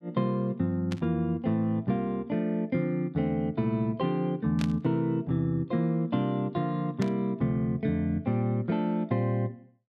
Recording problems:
burst of static; at 1 s, at 4.5 s and at 7 s; peak -6 dB vs average level

